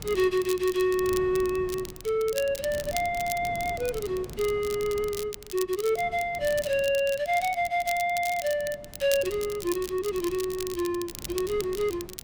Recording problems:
wind noise; below 360 Hz, SNR 18 dB
crackle; vinyl, SNR 12 dB

